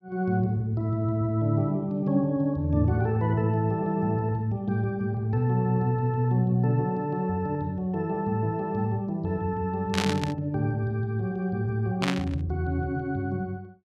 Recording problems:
burst of static; at 10 s and at 12 s; peak +3 dB vs average level

